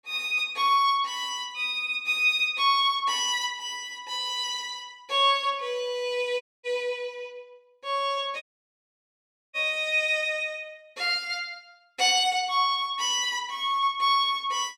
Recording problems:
audio cutting out; at 6.5 s and at 8.5 s for 1 s

